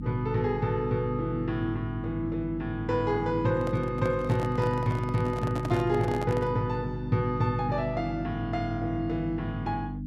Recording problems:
electrical hum; 50 Hz, harmonics up to 300 Hz, SNR 7 dB
microphone handling noise; from 3.5 to 6.5 s; peak -3 dB vs average level

